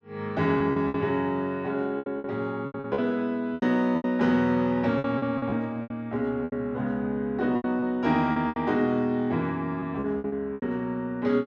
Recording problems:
packet loss; 12% of the sound replaced, filled with repeated pitch periods

